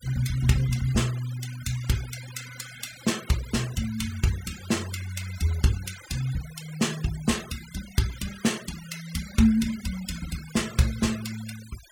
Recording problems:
noise reduction artefacts; signal-to-artefact ratio 14 dB

